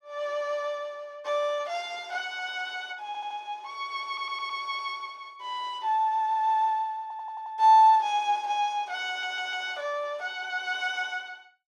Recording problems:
audio stuttering; 4 times, first at 3 s

